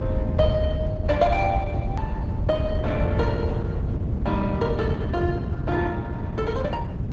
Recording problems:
low-pass filter; nothing above 8 kHz
codec artefacts; Opus, log-spectral distance 2 dB
rumble; below 140 Hz, SNR -1 dB
click at an edit; at 2 s

